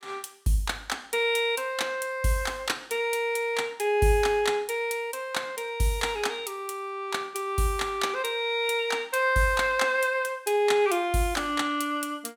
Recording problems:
none

